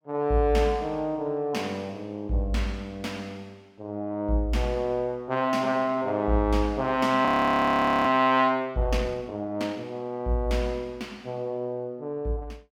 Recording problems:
audio freezing; at 7.5 s for 1 s

